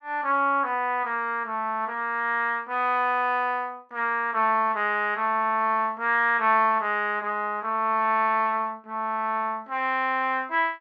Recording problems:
none

